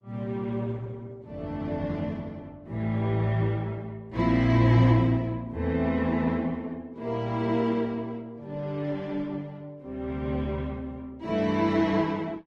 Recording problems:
lossy compression; Opus, log-spectral distance 2 dB

